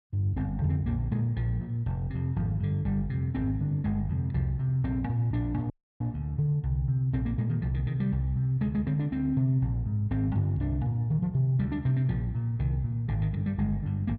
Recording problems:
audio cutting out; at 5.5 s

